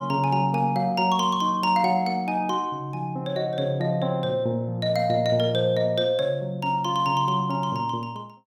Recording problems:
none

